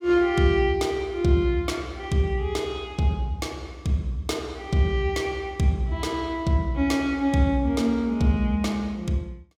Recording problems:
none

